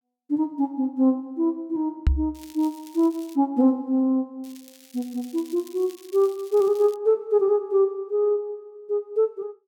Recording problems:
knock on the microphone; at 2 s; peak +7 dB vs average level
crackle; from 2.5 to 3.5 s and from 4.5 to 7 s; loose cable, SNR 25 dB

